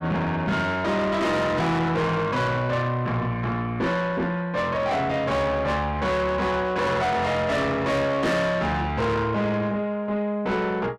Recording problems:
distortion; soft clipping, signal-to-distortion ratio 8 dB

